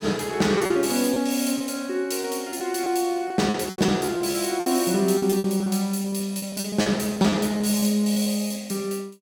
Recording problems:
lost packets; 11% of the sound replaced, filled with repeated pitch periods

